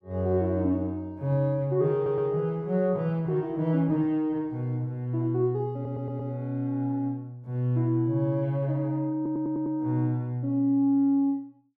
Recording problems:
stutter; at 2 s, at 5.5 s and at 9 s

